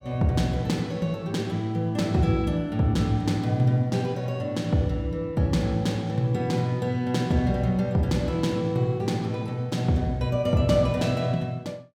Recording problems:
none

